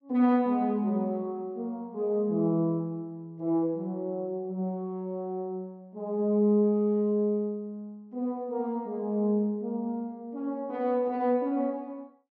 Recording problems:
none

